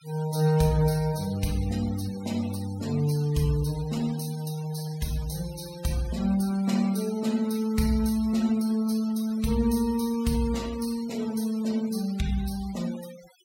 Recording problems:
denoising artefacts; signal-to-artefact ratio 18 dB

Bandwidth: 16 kHz